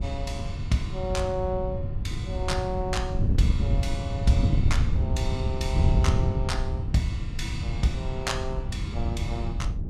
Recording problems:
wind on the microphone; below 120 Hz, SNR -3 dB

